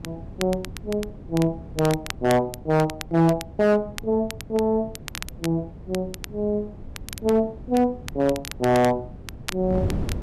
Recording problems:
distorted audio; hard clipping, signal-to-distortion ratio 11 dB
wind noise; below 220 Hz, SNR 14 dB
crackle; vinyl, SNR 14 dB

